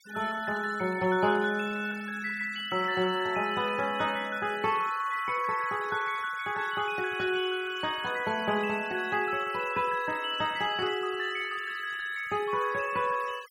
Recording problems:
denoising artefacts; signal-to-artefact ratio 18 dB

